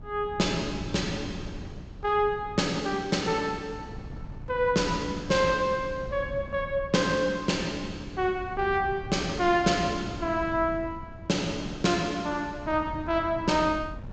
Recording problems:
treble cut off; nothing above 8 kHz
wind on the microphone; below 190 Hz, SNR 14 dB

